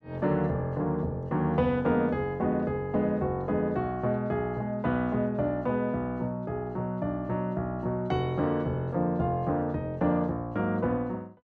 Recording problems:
none

